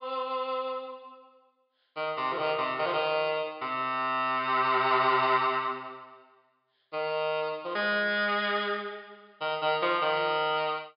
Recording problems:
treble missing; nothing above 5.5 kHz

